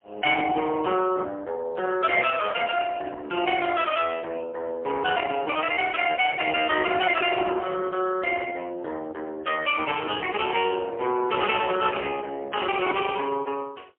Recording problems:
phone line; 320 Hz to 2.9 kHz, AMR-NB, then MP3

